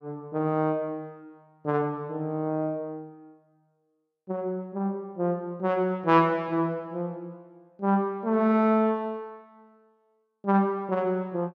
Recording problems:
none

